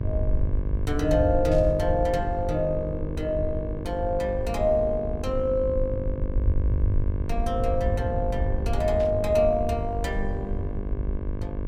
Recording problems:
mains hum; 50 Hz, harmonics up to 1.7 kHz, SNR 10 dB
rumble; below 86 Hz, SNR 4 dB
static burst; at 1.5 s and at 9 s; peak -14 dB vs average level

